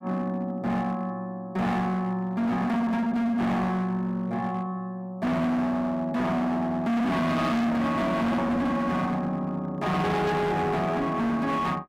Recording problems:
distortion; hard clipping, signal-to-distortion ratio 6 dB

